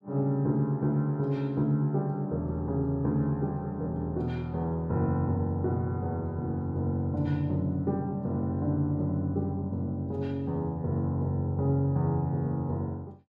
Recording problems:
none

